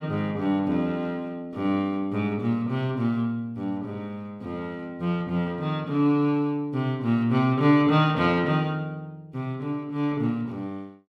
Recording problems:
none

